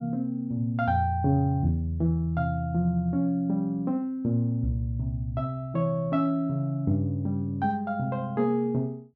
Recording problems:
none

